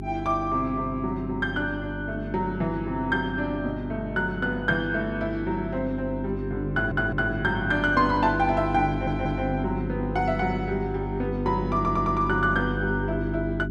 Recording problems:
hum; 50 Hz, harmonics up to 400 Hz, SNR 5 dB
audio stuttering; at 6.5 s, at 9 s and at 12 s

